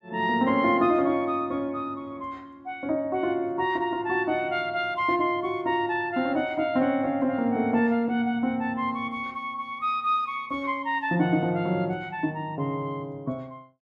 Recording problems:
none

